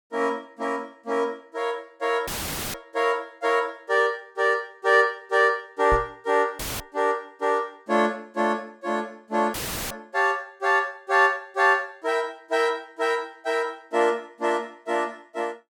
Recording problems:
audio cutting out; at 2.5 s, at 6.5 s and at 9.5 s; filled with static
knock on the microphone; at 6 s; peak -2 dB vs average level

